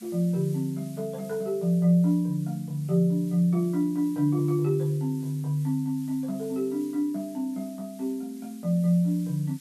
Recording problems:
hiss; SNR 24 dB

